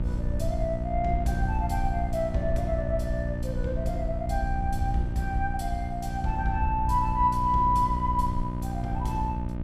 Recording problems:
electrical hum; 60 Hz, harmonics up to 960 Hz, SNR 5 dB
wind noise; below 80 Hz, SNR 5 dB

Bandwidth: 15.5 kHz